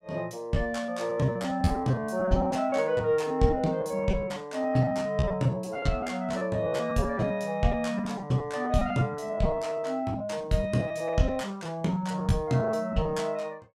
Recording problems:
lost packets; 14% of the sound replaced, filled with repeated pitch periods

